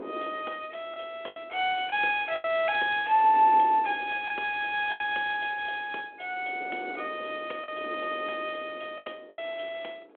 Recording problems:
phone line; 280 Hz to 3.5 kHz, G.726
wind on the microphone; below 570 Hz, SNR 19 dB
lost packets; 5% of the sound replaced, filled with the last packet

